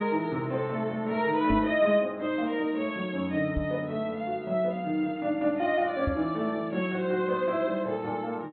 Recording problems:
treble missing; nothing above 4.2 kHz
microphone bump; at 1.5 s, at 3.5 s and at 6 s; peak +2 dB vs average level

